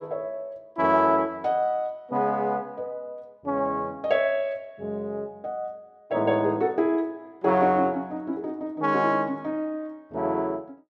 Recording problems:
none

